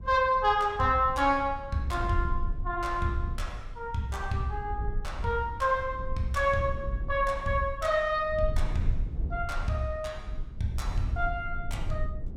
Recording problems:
rumble; below 64 Hz, SNR 8 dB

